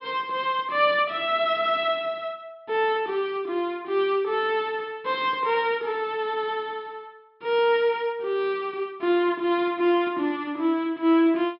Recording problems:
low-pass filter; nothing above 5.5 kHz

